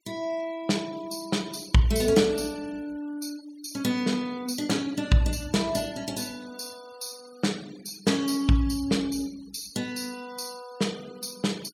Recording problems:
noise reduction artefacts; signal-to-artefact ratio 19 dB

